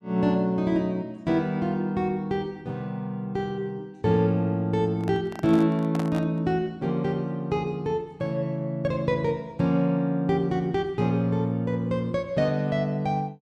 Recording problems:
microphone handling noise; from 5 to 6.5 s; peak -5 dB vs average level

